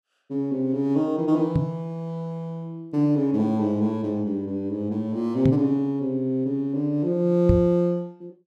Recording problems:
knock on the microphone; at 1.5 s, at 5.5 s and at 7.5 s; peak +7 dB vs average level

